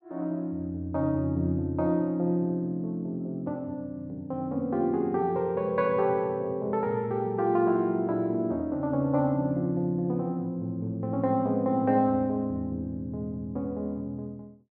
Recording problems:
low-pass filter; nothing above 5 kHz

